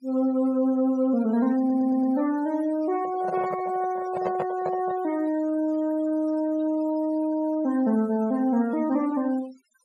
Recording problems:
noise reduction artefacts; signal-to-artefact ratio 20 dB
audio stuttering; at 1.5 s
microphone handling noise; from 3 to 5 s; peak -1 dB vs average level

